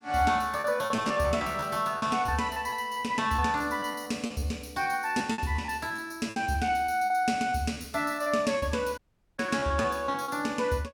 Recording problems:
packet loss; 14% of the sound replaced, filled with repeated pitch periods
audio cutting out; at 9 s

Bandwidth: 17.5 kHz